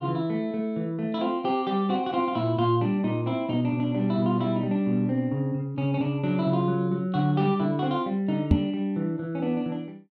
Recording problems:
knock on the microphone; at 8.5 s; peak +9 dB vs average level

